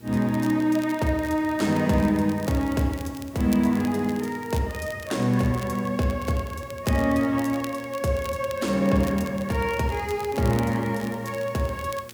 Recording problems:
hum; 60 Hz, harmonics up to 960 Hz, SNR 25 dB
hiss; slope -3 dB per octave, SNR 27 dB
crackling; vinyl, SNR 20 dB

